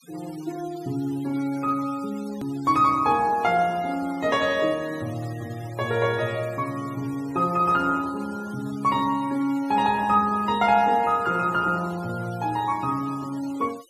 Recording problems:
noise reduction artefacts; signal-to-artefact ratio 21 dB
click at an edit; at 2.5 s

